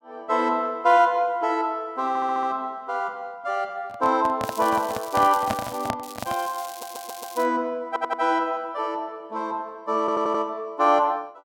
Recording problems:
stutter; 4 times, first at 2 s
microphone handling noise; from 4 to 6.5 s; peak +2 dB vs average level
crackling; from 4.5 to 6 s and from 6 to 7.5 s; loose cable, SNR 16 dB

